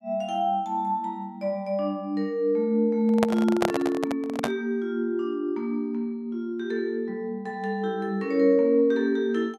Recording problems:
microphone handling noise; from 3 to 4.5 s; peak +4 dB vs average level

